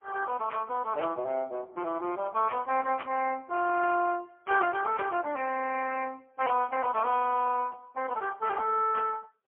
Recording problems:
telephone audio; 280 Hz to 3.1 kHz, AMR-NB, then MP3

